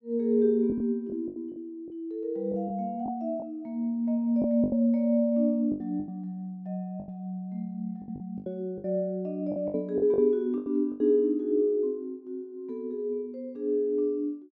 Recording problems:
packet loss; 8% of the sound replaced, filled with the last packet

